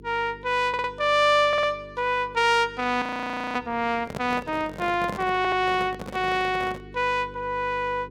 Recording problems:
hum; 50 Hz, harmonics up to 450 Hz, SNR 21 dB
audio stuttering; at 0.5 s, at 1.5 s and at 5.5 s
audio freezing; at 3 s for 0.5 s
microphone handling noise; from 4 to 7 s; peak -5 dB vs average level

